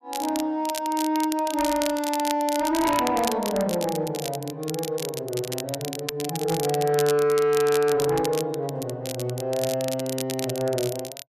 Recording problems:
distorted audio; soft clipping, signal-to-distortion ratio 11 dB
crackling; vinyl, SNR 9 dB

